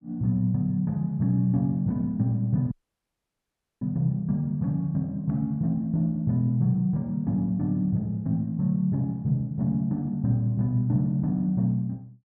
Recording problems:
audio cutting out; at 2.5 s for 1 s

